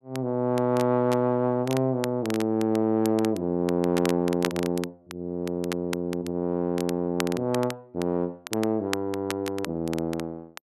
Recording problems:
crackling; vinyl, SNR 13 dB

